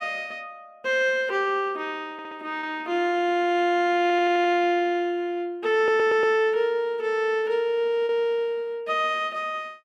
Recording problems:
packet loss; 0.9% of the sound replaced, filled with repeated pitch periods
audio stuttering; at 2 s, at 4 s and at 6 s

